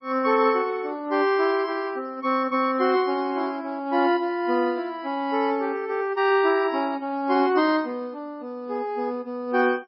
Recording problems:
codec artefacts; MP3, log-spectral distance 2 dB, nothing above 4.6 kHz

